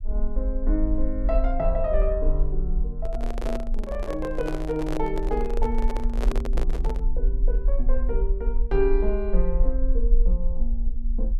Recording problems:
low-frequency rumble; below 42 Hz, SNR -2 dB
handling noise; from 3 to 7 s; peak +3 dB vs average level

